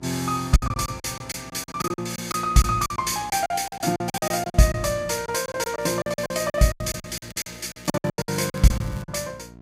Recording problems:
hum; 60 Hz, harmonics up to 1.1 kHz, SNR 23 dB
lost packets; 18% of the sound replaced, filled with silence
crackling; at 3.5 s and from 6 to 9 s; loose cable, SNR 23 dB

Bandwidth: 15.5 kHz